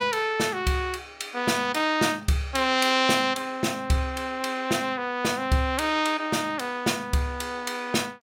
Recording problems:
none

